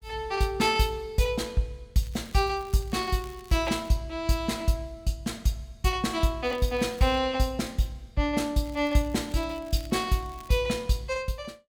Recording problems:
crackling; 4 times, first at 2 s; loose cable, SNR 24 dB

